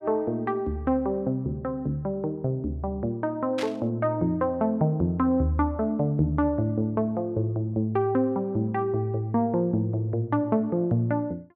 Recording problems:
static burst; at 3.5 s; peak -4 dB vs average level

